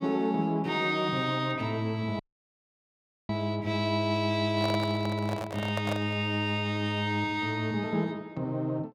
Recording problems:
audio cutting out; at 2 s for 1 s
handling noise; from 4.5 to 6 s; peak -1 dB vs average level

